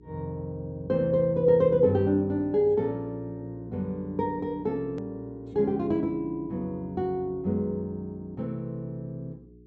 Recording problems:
low-pass filter; nothing above 8 kHz
electrical hum; 60 Hz, harmonics up to 420 Hz, SNR 23 dB
hard cut with a click; at 5 s

